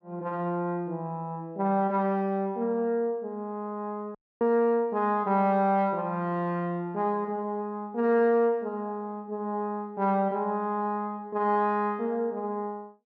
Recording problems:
dropout; at 4 s

